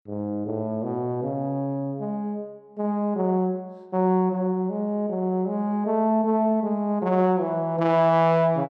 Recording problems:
none

